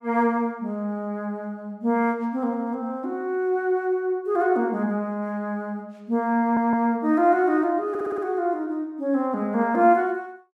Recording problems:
stutter; at 6.5 s and at 8 s

